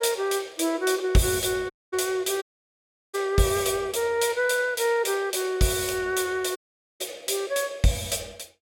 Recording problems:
audio cutting out; at 1.5 s, at 2.5 s for 0.5 s and at 6.5 s

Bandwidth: 16.5 kHz